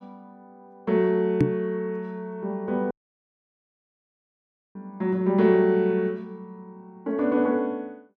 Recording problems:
knock on the microphone; at 1.5 s; peak +7 dB vs average level
dropout; at 3 s for 2 s

